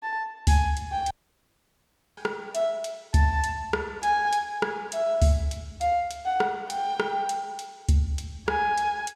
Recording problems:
dropout; at 1 s for 1 s

